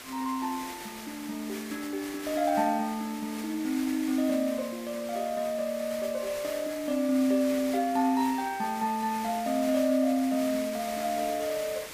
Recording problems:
hiss; SNR 12 dB

